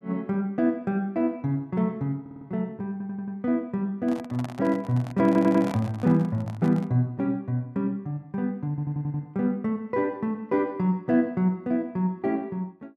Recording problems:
audio stuttering; 4 times, first at 2 s
handling noise; from 4 to 7 s; peak -5 dB vs average level

